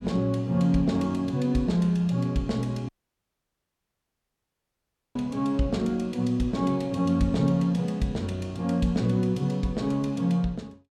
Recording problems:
audio cutting out; at 3 s for 2.5 s

